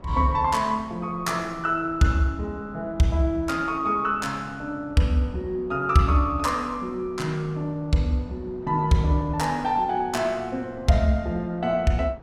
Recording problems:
wind on the microphone; below 530 Hz, SNR 21 dB

